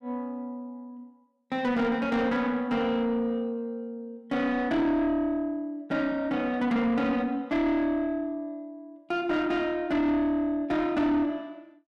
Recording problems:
distortion; soft clipping, signal-to-distortion ratio 10 dB

